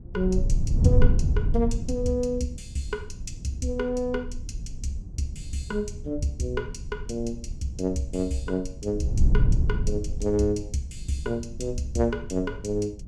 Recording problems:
wind on the microphone; below 86 Hz, SNR 1 dB

